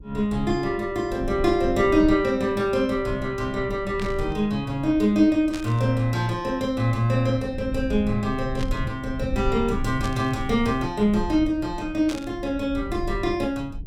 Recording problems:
rumble; below 96 Hz, SNR 12 dB
burst of static; 5 times, first at 4 s; peak -8 dB vs average level

